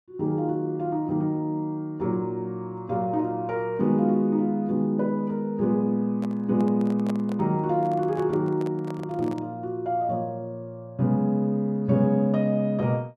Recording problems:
handling noise; from 6 to 9.5 s; peak -6 dB vs average level

